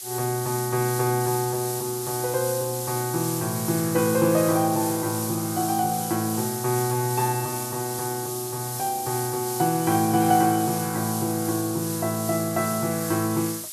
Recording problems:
hiss; SNR 6 dB

